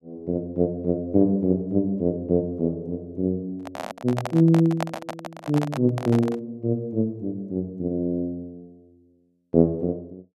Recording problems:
handling noise; from 3.5 to 6.5 s; peak 0 dB vs average level

